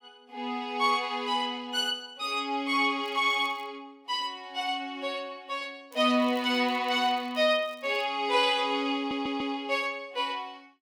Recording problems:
crackling; at 3 s and from 6 to 8 s; loose cable, SNR 28 dB
audio stuttering; at 9 s

